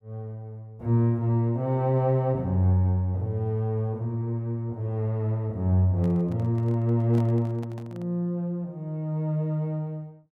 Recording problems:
microphone handling noise; from 6 to 8 s; peak -10 dB vs average level

